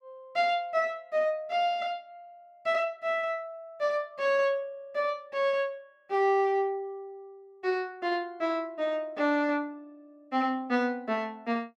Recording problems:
none

